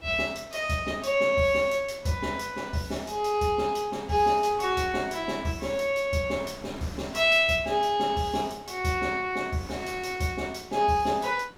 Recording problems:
wind on the microphone; below 1.5 kHz, SNR 21 dB

